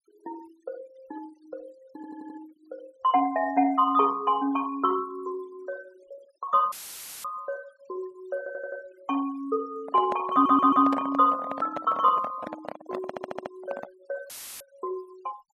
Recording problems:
denoising artefacts; signal-to-artefact ratio 24 dB
audio stuttering; 4 times, first at 2 s
audio cutting out; at 6.5 s for 0.5 s and at 14 s; filled with static
handling noise; from 10 to 14 s; peak -3 dB vs average level

